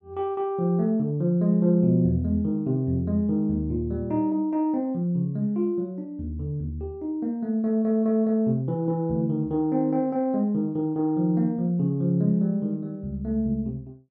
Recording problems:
none

